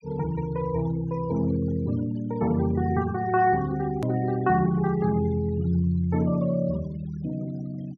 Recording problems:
treble missing; nothing above 6.5 kHz
denoising artefacts; signal-to-artefact ratio 22 dB
edit click; at 4 s

